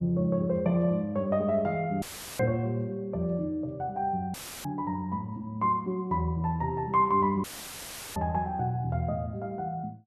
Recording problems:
audio cutting out; at 2 s, at 4.5 s and at 7.5 s for 0.5 s; filled with static

